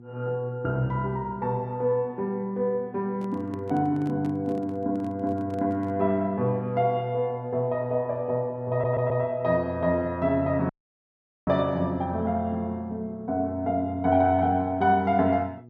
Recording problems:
mains hum; 60 Hz, harmonics up to 840 Hz, SNR 22 dB
handling noise; from 3 to 6 s; peak -10 dB vs average level
audio stuttering; at 8.5 s
dropout; at 11 s for 1 s

